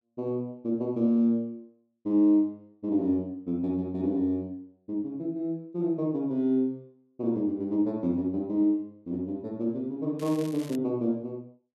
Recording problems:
crackle; at 10 s; loose cable, SNR 19 dB

